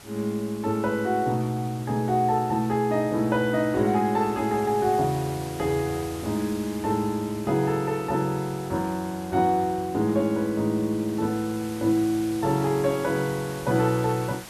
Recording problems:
hiss; slope -2 dB per octave, SNR 17 dB

